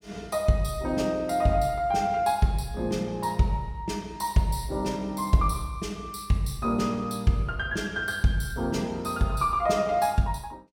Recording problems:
none

